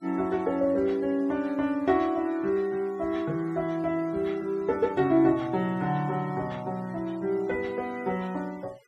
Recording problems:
denoising artefacts; signal-to-artefact ratio 25 dB

